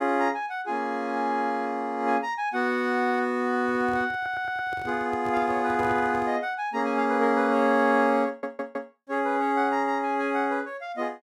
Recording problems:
microphone handling noise; from 3.5 to 6.5 s; peak -8 dB vs average level
audio stuttering; at 4 s and at 8.5 s

